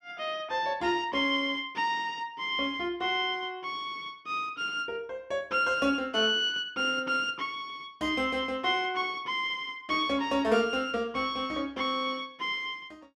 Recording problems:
none

